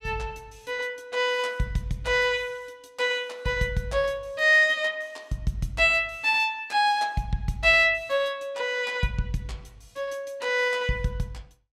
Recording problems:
none

